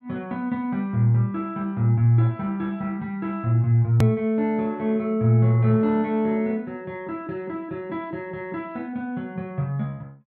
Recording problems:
click at an edit; at 4 s

